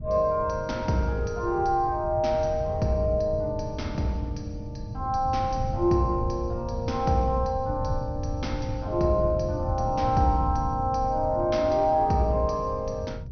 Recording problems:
low-pass filter; nothing above 6.1 kHz
wind noise; below 120 Hz, SNR 8 dB

